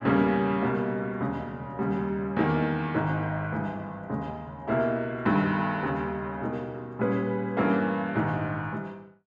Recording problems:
none

